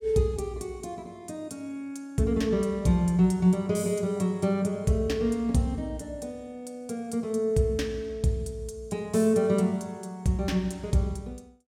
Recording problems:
none

